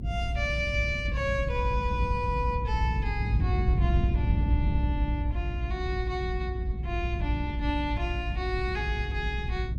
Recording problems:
low-frequency rumble; below 110 Hz, strongest tone 60 Hz, SNR -3 dB

